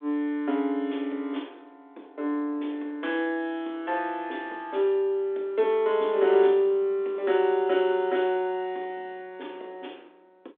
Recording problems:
phone line; 240 Hz to 3.6 kHz, G.726

